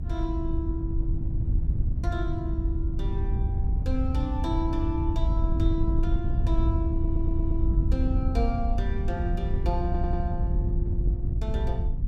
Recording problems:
hum; 50 Hz, harmonics up to 300 Hz, SNR 3 dB
wind on the microphone; below 84 Hz, SNR -5 dB
stutter; at 7 s and at 10 s

